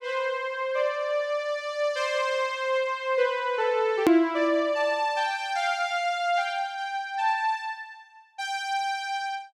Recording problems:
hard cut with a click; at 4 s

